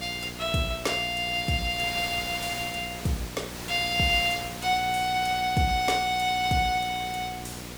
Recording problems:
electrical hum; 60 Hz, harmonics up to 1 kHz, SNR 16 dB
background hiss; slope -2 dB per octave, SNR 12 dB

